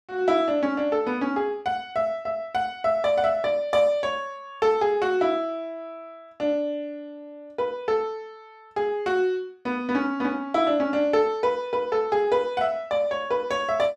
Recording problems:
none

